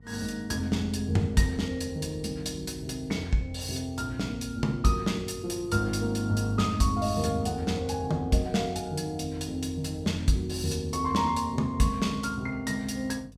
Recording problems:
hum; 50 Hz, harmonics up to 500 Hz, SNR 21 dB

